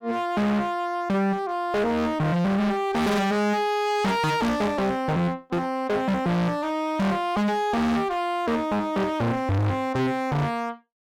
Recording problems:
distorted audio; hard clipping, signal-to-distortion ratio 6 dB

